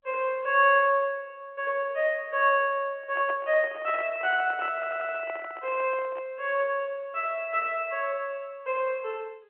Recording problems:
phone line; 320 Hz to 3.3 kHz, G.711
microphone handling noise; from 3 to 6.5 s; peak -8 dB vs average level
stutter; at 4.5 s

